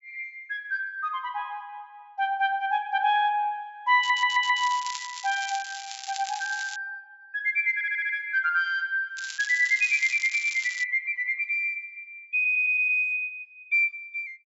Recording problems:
low-pass filter; nothing above 8 kHz
audio stuttering; at 4 s, at 7.5 s and at 12 s
crackle; from 4 to 7 s and from 9 to 11 s; loose cable, SNR 13 dB

